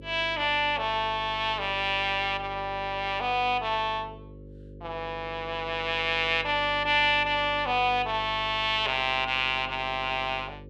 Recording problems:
hum; 50 Hz, harmonics up to 550 Hz, SNR 18 dB

